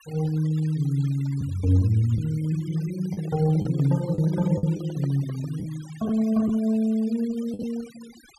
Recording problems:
denoising artefacts; signal-to-artefact ratio 22 dB
packet loss; 4% of the sound replaced, filled with the last packet
handling noise; from 3 to 5.5 s; peak -11 dB vs average level

